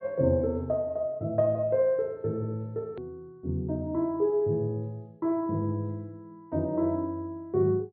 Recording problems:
treble cut off; nothing above 4.4 kHz
click at an edit; at 3 s

